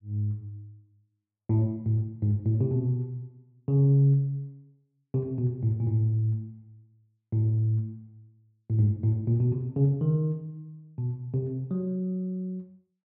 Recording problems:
none

